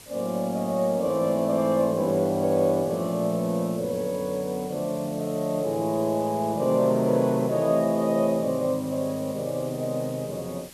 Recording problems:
hiss; slope -1 dB per octave, SNR 19 dB

